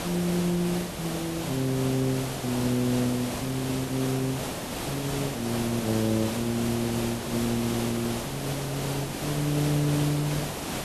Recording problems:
background hiss; slope -5 dB per octave, SNR 4 dB

